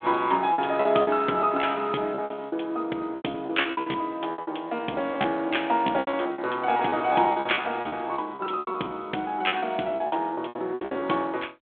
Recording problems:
phone line; 240 Hz to 3.5 kHz, G.726
lost packets; 18% of the sound replaced, filled with repeated pitch periods

